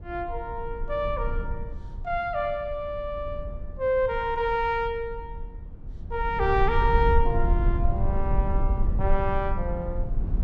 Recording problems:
low-frequency rumble; below 68 Hz, SNR 2 dB

